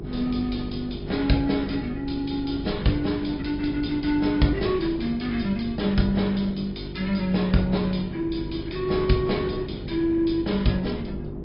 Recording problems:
low-pass filter; nothing above 5.2 kHz
codec artefacts; AAC, log-spectral distance 4 dB
hum; 50 Hz, harmonics up to 400 Hz, SNR 12 dB
wind on the microphone; below 250 Hz, SNR 13 dB

